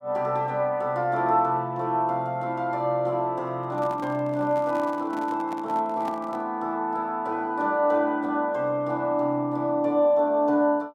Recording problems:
handling noise; from 3.5 to 6.5 s; peak -7 dB vs average level

